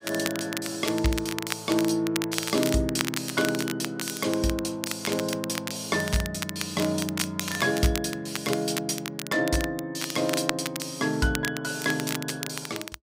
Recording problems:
crackling; vinyl, SNR 6 dB

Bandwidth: 15.5 kHz